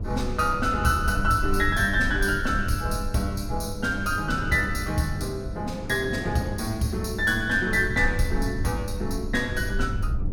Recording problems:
hum; 50 Hz, harmonics up to 700 Hz, SNR 13 dB
low-frequency rumble; below 82 Hz, SNR 8 dB
wind noise; below 410 Hz, SNR 18 dB

